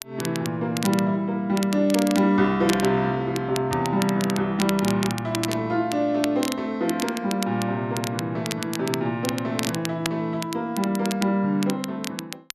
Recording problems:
crackling; vinyl, SNR 10 dB

